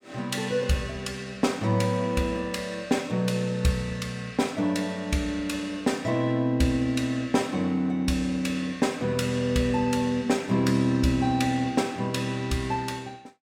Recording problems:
none

